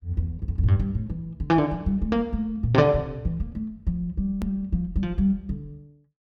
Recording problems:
edit click; at 4.5 s

